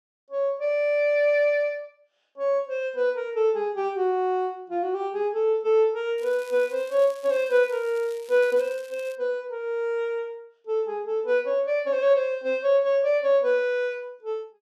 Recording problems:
crackle; from 6 to 9 s; loose cable, SNR 25 dB

